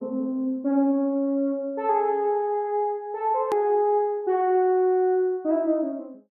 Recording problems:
edit click; at 3.5 s

